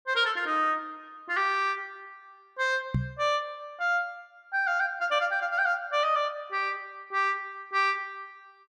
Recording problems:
microphone thump; at 3 s; peak +4 dB vs average level

